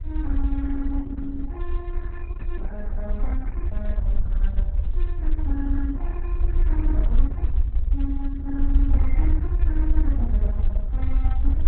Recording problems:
codec artefacts; Opus, then Opus, log-spectral distance 2 dB, nothing above 3.9 kHz
rumble; below 58 Hz, SNR -8 dB

